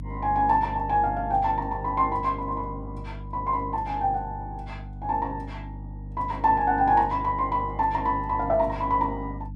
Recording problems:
hum; 50 Hz, harmonics up to 300 Hz, SNR 12 dB

